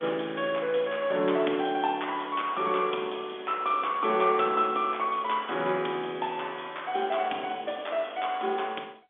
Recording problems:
phone line; 240 Hz to 3.5 kHz, G.711

